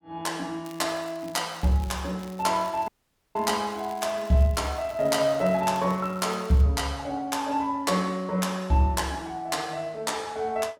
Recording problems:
crackle; at 0.5 s and from 1.5 to 6.5 s; loose cable, SNR 24 dB
dropout; at 3 s

